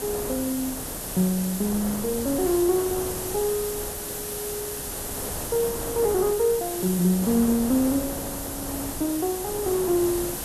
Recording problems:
hiss; SNR 6 dB
wind on the microphone; below 750 Hz, SNR 12 dB

